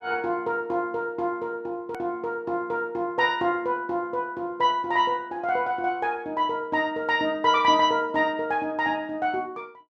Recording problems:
edit click; at 2 s

